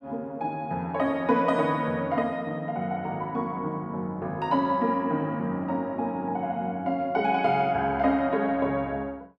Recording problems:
none

